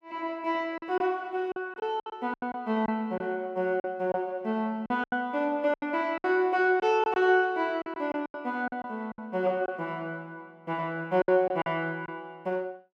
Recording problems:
lost packets; 9% of the sound replaced, filled with silence

